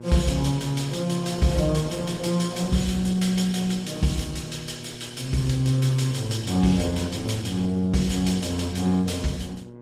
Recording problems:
codec artefacts; Opus, log-spectral distance 4 dB
hum; 60 Hz, harmonics up to 1.4 kHz, SNR 16 dB

